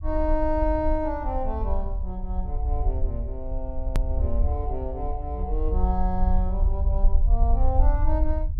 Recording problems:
low-frequency rumble; below 60 Hz, SNR -4 dB
click at an edit; at 4 s

